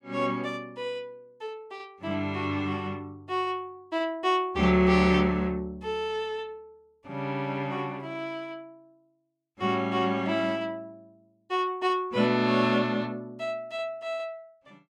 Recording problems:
none

